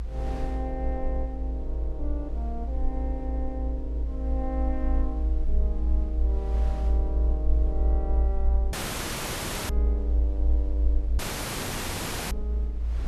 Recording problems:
electrical hum; 60 Hz, harmonics up to 720 Hz, SNR 17 dB
rumble; below 58 Hz, strongest tone 56 Hz, SNR -9 dB
wind noise; below 410 Hz, SNR 12 dB
audio cutting out; at 8.5 s for 1 s and at 11 s for 1 s

